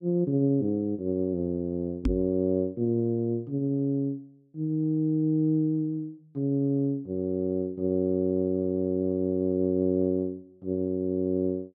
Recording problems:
knock on the microphone; at 2 s; peak +4 dB vs average level

